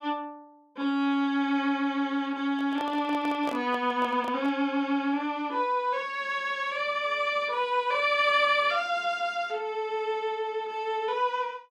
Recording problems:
microphone handling noise; from 2.5 to 4.5 s; peak -5 dB vs average level

